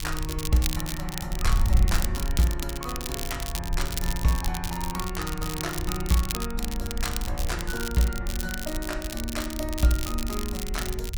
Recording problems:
wind on the microphone; below 62 Hz, SNR 3 dB
crackling; vinyl, SNR 5 dB

